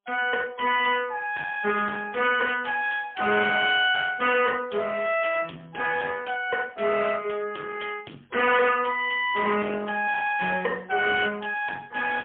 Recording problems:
telephone audio; 260 Hz to 3.3 kHz, AMR-NB, then MP3
distortion; soft clipping, signal-to-distortion ratio 12 dB

